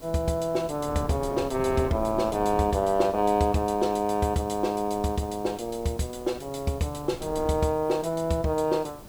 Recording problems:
background hiss; slope +1 dB per octave, SNR 25 dB
wind on the microphone; below 520 Hz, SNR 15 dB

